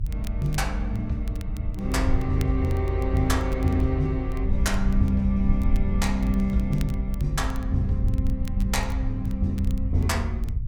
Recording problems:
low-frequency rumble; below 66 Hz, SNR 2 dB
crackling; vinyl, SNR 23 dB

